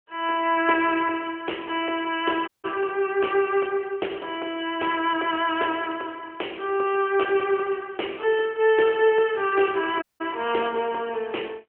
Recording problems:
phone line; 280 Hz to 3.2 kHz, AMR-NB
dropout; at 2.5 s and at 10 s

